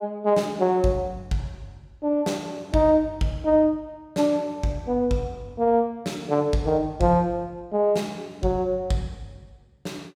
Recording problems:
none

